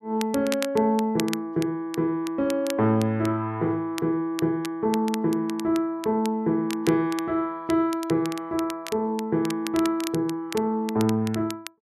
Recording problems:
crackle; vinyl, SNR 14 dB

